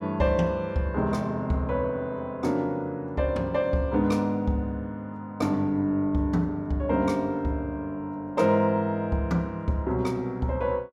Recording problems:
none

